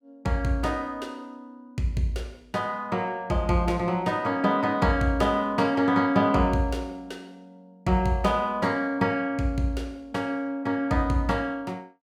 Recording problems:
none

